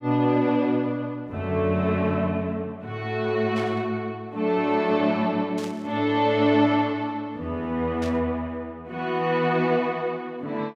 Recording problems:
static burst; at 3.5 s, at 5.5 s and at 8 s; peak -10 dB vs average level

